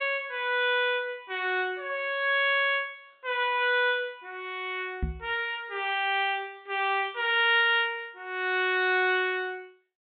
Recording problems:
treble missing; nothing above 4 kHz
microphone bump; at 5 s; peak 0 dB vs average level

